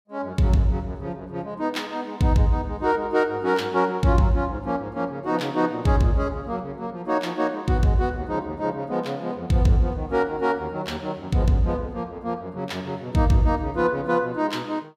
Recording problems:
none

